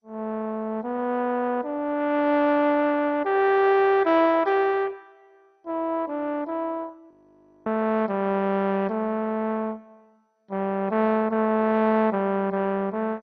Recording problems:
lossy compression; MP2, log-spectral distance 3 dB, nothing above 5 kHz
audio freezing; at 7 s for 0.5 s

